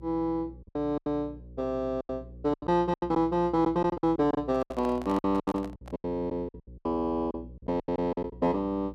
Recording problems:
hum; 60 Hz, harmonics up to 540 Hz, SNR 18 dB
lost packets; 15% of the sound replaced, filled with silence
handling noise; from 4.5 to 6 s; peak -6 dB vs average level

